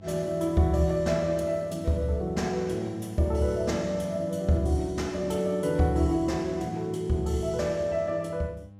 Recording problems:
electrical hum; 50 Hz, harmonics up to 800 Hz, SNR 21 dB

